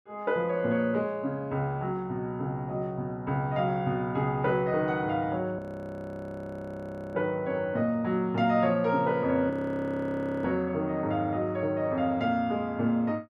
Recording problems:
frozen audio; at 5.5 s for 1.5 s and at 9.5 s for 1 s

